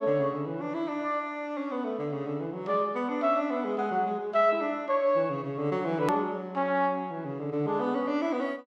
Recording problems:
edit click; at 6 s

